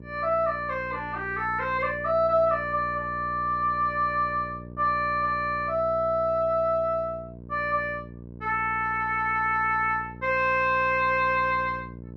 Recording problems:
hum; 60 Hz, harmonics up to 600 Hz, SNR 16 dB

